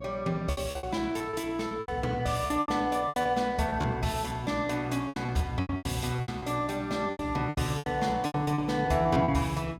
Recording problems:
hum; 60 Hz, harmonics up to 720 Hz, SNR 17 dB
packet loss; 16% of the sound replaced, filled with repeated pitch periods

